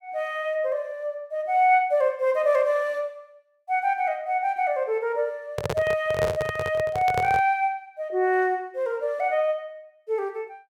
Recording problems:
microphone handling noise; from 5.5 to 7.5 s; peak 0 dB vs average level

